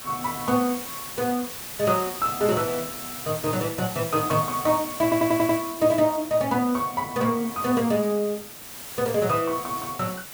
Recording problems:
background hiss; slope -1 dB per octave, SNR 10 dB
stutter; at 5 s

